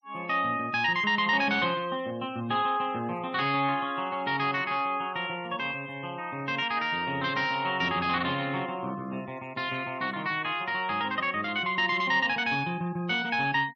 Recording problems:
noise reduction artefacts; signal-to-artefact ratio 23 dB

